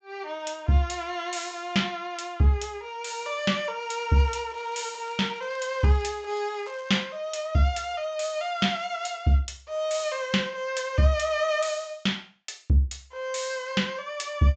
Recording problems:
treble missing; nothing above 8 kHz
crackling; from 4 to 6 s and at 6 s; loose cable, SNR 27 dB

